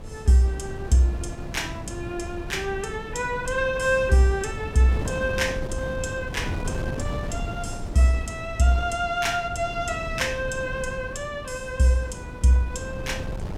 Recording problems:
wind on the microphone; below 250 Hz, SNR 9 dB

